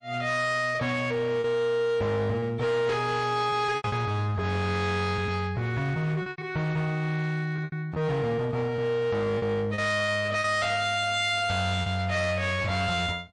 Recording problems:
codec artefacts; MP3, log-spectral distance 2 dB, nothing above 8.7 kHz
distorted audio; hard clipping, signal-to-distortion ratio 10 dB
packet loss; 6% of the sound replaced, filled with repeated pitch periods

